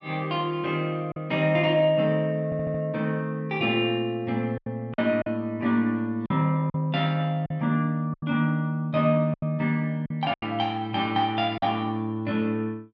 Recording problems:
packet loss; 5% of the sound replaced, filled with silence
audio stuttering; at 2.5 s

